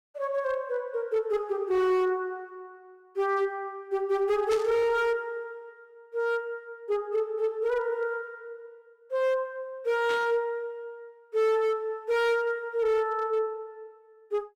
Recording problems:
distortion; hard clipping, signal-to-distortion ratio 12 dB
burst of static; at 4.5 s and at 10 s; peak -6 dB vs average level

